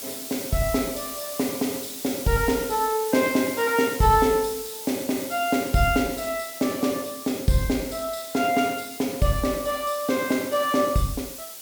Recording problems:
hiss; SNR 10 dB

